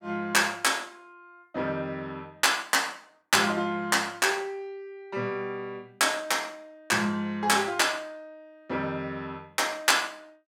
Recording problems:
none

